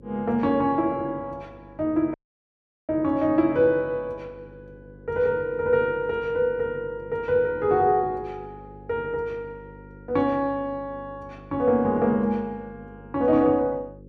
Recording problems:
electrical hum; 50 Hz, harmonics up to 550 Hz, SNR 22 dB
dropout; at 2 s for 1 s

